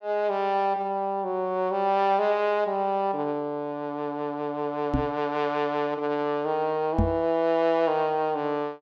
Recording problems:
knock on the microphone; at 5 s and at 7 s; peak +5 dB vs average level

